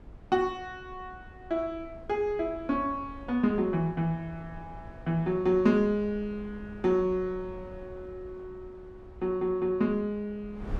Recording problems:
wind on the microphone; below 250 Hz, SNR 20 dB

